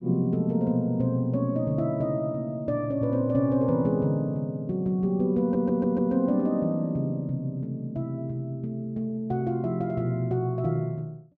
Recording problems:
audio stuttering; at 5.5 s

